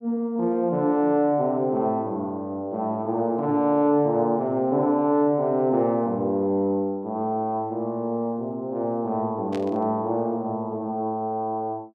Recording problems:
static burst; at 9.5 s; peak -11 dB vs average level

